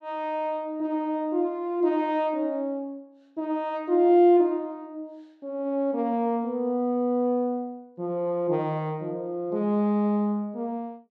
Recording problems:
none

